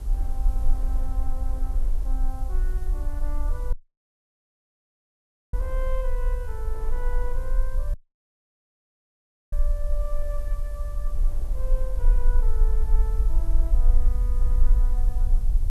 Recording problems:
background hiss; slope +3 dB per octave, SNR 14 dB
rumble; below 40 Hz, strongest tone 18 Hz, SNR -14 dB
wind on the microphone; below 680 Hz, SNR 10 dB
audio cutting out; at 3.5 s for 2 s and at 8 s for 1.5 s

